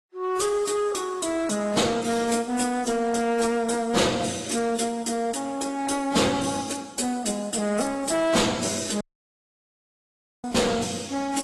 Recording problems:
codec artefacts; AAC, then AAC, log-spectral distance 5 dB, nothing above 11 kHz
distorted audio; hard clipping, uneven, signal-to-distortion ratio 6 dB
audio cutting out; at 9 s for 1.5 s

